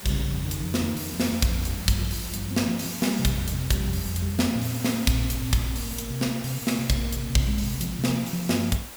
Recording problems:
background hiss; slope -2 dB per octave, SNR 12 dB

